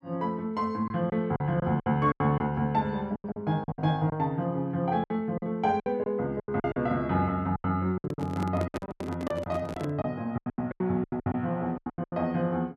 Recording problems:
lost packets; 15% of the sound replaced, filled with silence
microphone handling noise; from 8 to 10 s; peak -1 dB vs average level

